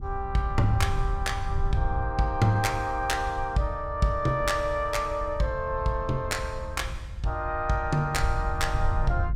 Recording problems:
wind noise; below 84 Hz, SNR 6 dB

